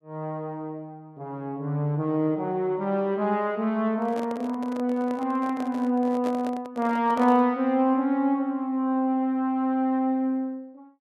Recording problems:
microphone handling noise; from 4 to 7.5 s; peak -6 dB vs average level

